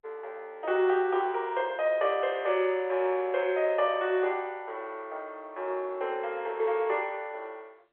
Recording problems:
phone line; 320 Hz to 3.6 kHz, G.711

